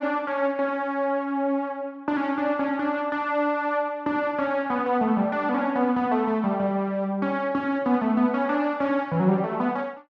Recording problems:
none

